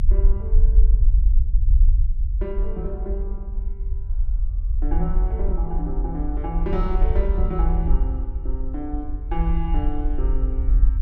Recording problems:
rumble; below 50 Hz, SNR -7 dB

